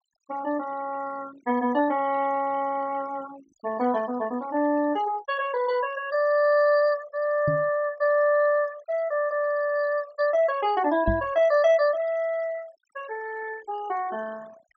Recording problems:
treble missing; nothing above 8 kHz
denoising artefacts; signal-to-artefact ratio 21 dB
microphone thump; at 7.5 s and at 11 s; peak +2 dB vs average level

